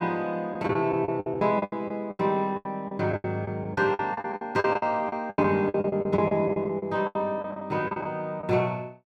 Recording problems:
lost packets; 18% of the sound replaced, filled with the last packet

